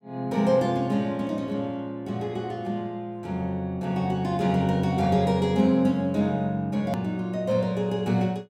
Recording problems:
hard cut with a click; at 7 s

